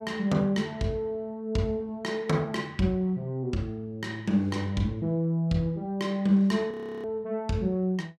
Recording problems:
audio freezing; at 6.5 s

